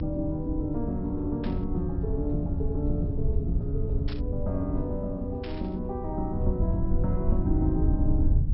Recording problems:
treble cut off; nothing above 5.4 kHz
hum; 60 Hz, harmonics up to 840 Hz, SNR 21 dB
low-frequency rumble; below 92 Hz, SNR -1 dB
static burst; at 1.5 s, at 4 s and at 5.5 s; peak -7 dB vs average level

